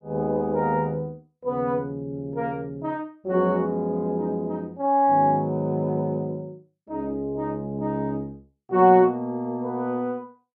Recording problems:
none

